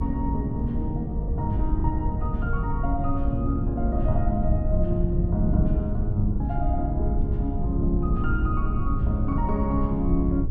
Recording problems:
low-frequency rumble; below 74 Hz, SNR 0 dB
wind on the microphone; below 230 Hz, SNR 4 dB
lost packets; 3% of the sound replaced, filled with the last packet

